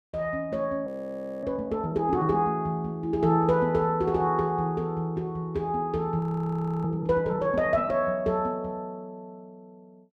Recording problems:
frozen audio; at 1 s for 0.5 s and at 6 s for 0.5 s

